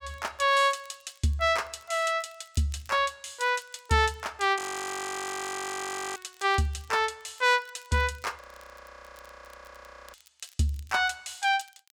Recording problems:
crackle; vinyl, SNR 29 dB
frozen audio; at 4.5 s for 1.5 s and at 8.5 s for 1.5 s

